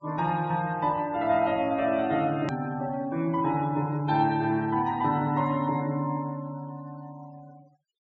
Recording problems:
treble missing; nothing above 7.7 kHz
noise reduction artefacts; signal-to-artefact ratio 24 dB
hard cut with a click; at 2.5 s

